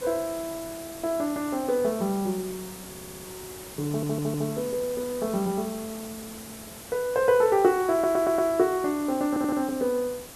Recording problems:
hiss; slope -3 dB per octave, SNR 14 dB
stutter; 4 times, first at 3 s

